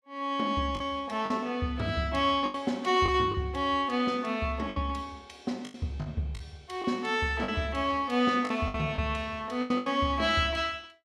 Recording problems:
lost packets; 7% of the sound replaced, filled with the last packet

